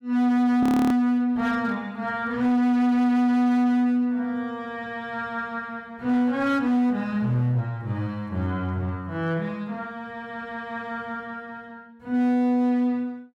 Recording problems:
distortion; hard clipping, signal-to-distortion ratio 10 dB
audio freezing; at 0.5 s

